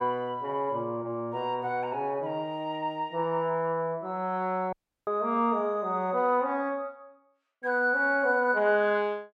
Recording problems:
audio cutting out; at 4.5 s

